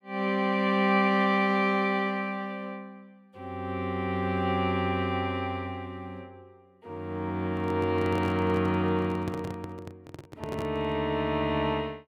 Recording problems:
handling noise; from 7.5 to 11 s; peak -4 dB vs average level

